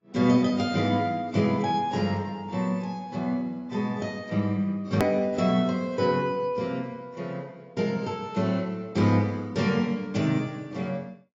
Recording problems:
lossy codec; AAC, log-spectral distance 2 dB, nothing above 19.5 kHz
edit click; at 5 s

